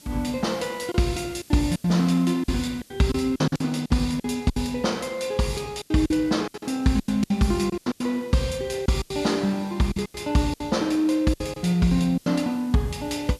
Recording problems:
hiss; SNR 27 dB
lost packets; 12% of the sound replaced, filled with silence

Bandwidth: 13.5 kHz